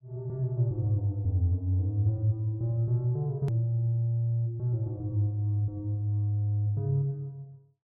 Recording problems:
edit click; at 3.5 s

